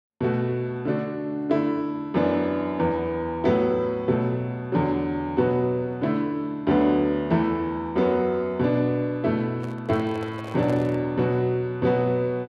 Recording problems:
microphone handling noise; from 9.5 to 11 s; peak -8 dB vs average level

